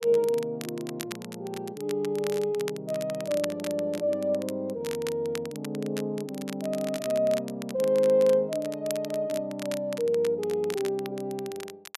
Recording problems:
crackling; vinyl, SNR 14 dB

